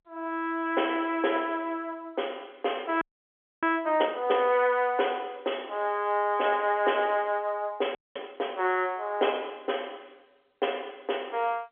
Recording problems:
phone line; 300 Hz to 3.4 kHz, G.711
frozen audio; at 3 s for 0.5 s and at 8 s

